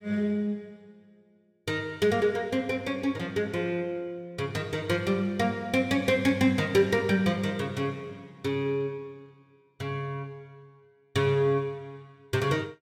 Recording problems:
none

